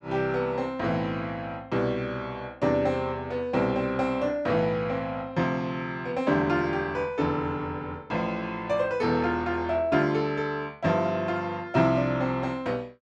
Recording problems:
none

